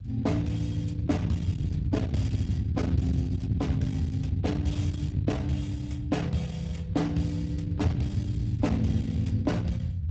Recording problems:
codec artefacts; Speex, log-spectral distance 2 dB, nothing above 7.6 kHz
distortion; soft clipping, signal-to-distortion ratio 11 dB
low-frequency rumble; below 150 Hz, SNR 1 dB

